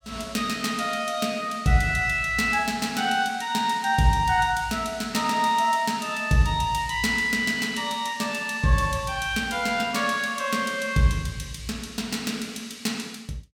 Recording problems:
none

